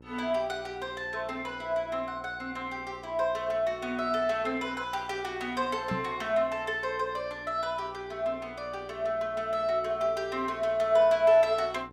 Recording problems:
electrical hum; 60 Hz, harmonics up to 1.1 kHz, SNR 23 dB
microphone thump; at 6 s; peak 0 dB vs average level

